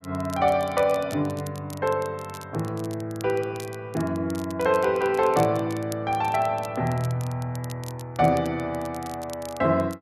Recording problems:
crackling; vinyl, SNR 20 dB

